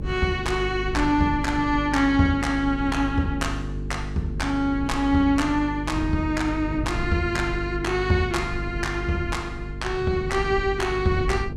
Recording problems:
mains hum; 50 Hz, harmonics up to 450 Hz, SNR 9 dB
wind noise; below 120 Hz, SNR 13 dB

